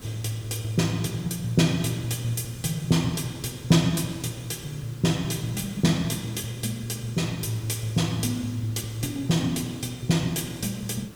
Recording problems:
background hiss; SNR 18 dB

